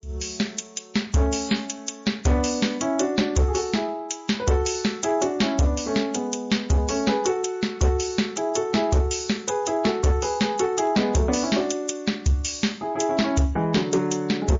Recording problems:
lossy compression; MP3, log-spectral distance 5 dB
distortion; hard clipping, signal-to-distortion ratio 11 dB

